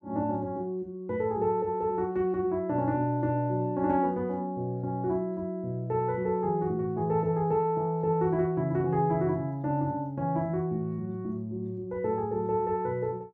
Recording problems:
none

